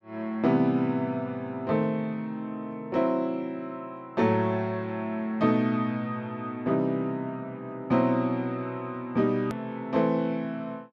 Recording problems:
hard cut with a click; at 9.5 s

